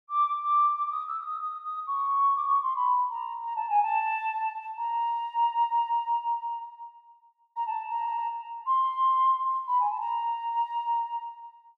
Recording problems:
audio stuttering; at 8 s

